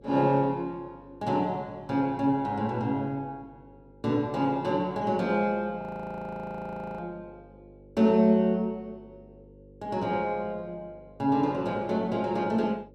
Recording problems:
mains hum; 50 Hz, harmonics up to 550 Hz, SNR 25 dB
audio freezing; at 6 s for 1 s

